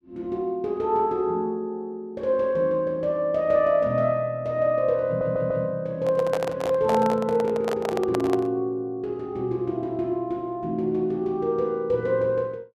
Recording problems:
stutter; at 5 s
handling noise; from 6 to 8.5 s; peak -1 dB vs average level

